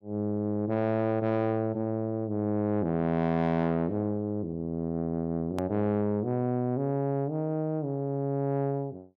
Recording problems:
distorted audio; soft clipping, signal-to-distortion ratio 12 dB
click at an edit; at 5.5 s

